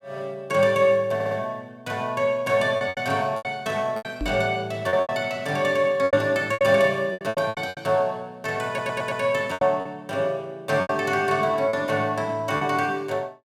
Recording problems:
packet loss; 9% of the sound replaced, filled with repeated pitch periods
audio stuttering; at 1 s and at 8.5 s
microphone thump; at 4 s; peak -3 dB vs average level

